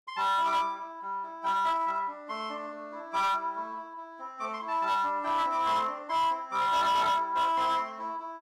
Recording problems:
distortion; hard clipping, signal-to-distortion ratio 11 dB

